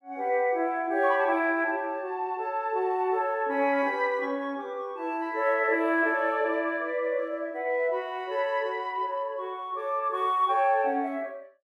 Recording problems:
none

